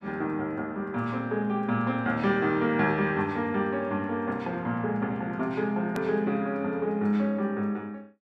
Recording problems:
hard cut with a click; at 6 s

